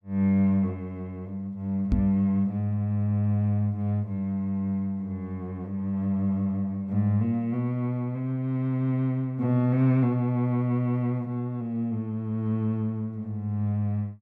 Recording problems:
microphone thump; at 2 s; peak +6 dB vs average level

